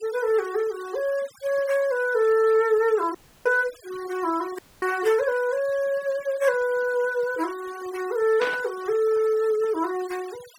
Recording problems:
noise reduction artefacts; signal-to-artefact ratio 21 dB
dropout; at 3 s and at 4.5 s
static burst; at 8.5 s; peak -3 dB vs average level

